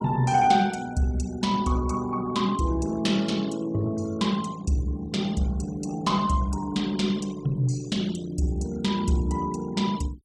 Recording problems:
denoising artefacts; signal-to-artefact ratio 20 dB

